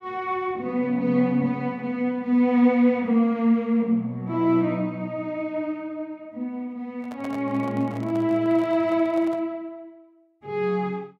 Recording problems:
handling noise; from 7 to 9.5 s; peak -10 dB vs average level

